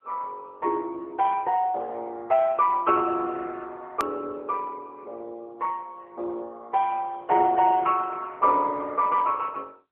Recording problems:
telephone audio; 300 Hz to 3.3 kHz, AMR-NB
click at an edit; at 4 s

